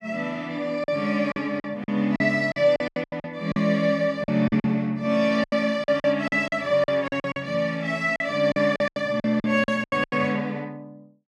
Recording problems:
packet loss; 14% of the sound replaced, filled with silence

